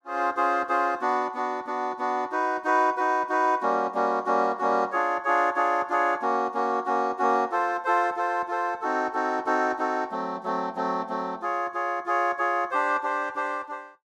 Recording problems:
none

